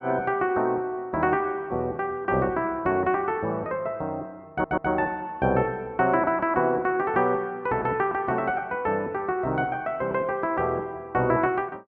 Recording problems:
stutter; at 4.5 s

